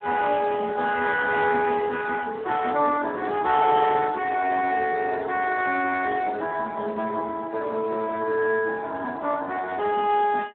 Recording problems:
telephone audio; 260 Hz to 2.9 kHz, Speex

